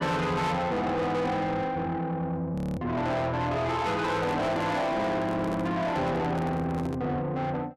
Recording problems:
distortion; soft clipping, signal-to-distortion ratio 8 dB
frozen audio; at 2.5 s
microphone handling noise; from 4 to 7 s; peak -1 dB vs average level

